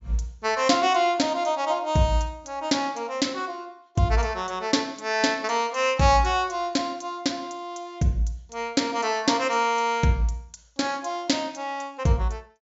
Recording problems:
low-pass filter; nothing above 8 kHz

